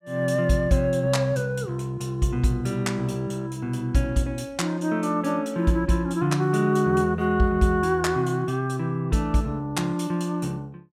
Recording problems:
none

